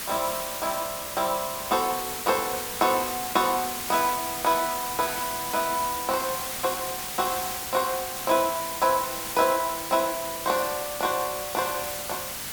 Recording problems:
hiss; slope 0 dB per octave, SNR 4 dB

